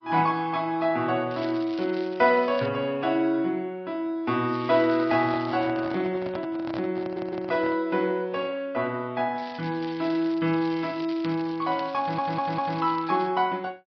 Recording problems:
treble missing; nothing above 5.2 kHz
lossy codec; MP3, then MP3, log-spectral distance 3 dB
crackling; from 1.5 to 2.5 s, from 4.5 to 5.5 s and from 9.5 to 13 s; loose cable, SNR 20 dB
microphone handling noise; from 5 to 8 s; peak -6 dB vs average level
stutter; at 7 s and at 12 s

